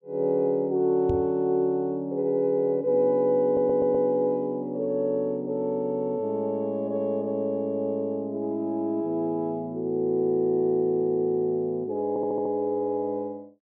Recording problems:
microphone bump; at 1 s; peak -1 dB vs average level
stutter; at 3.5 s and at 12 s

